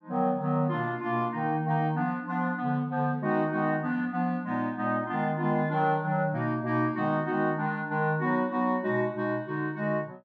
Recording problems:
none

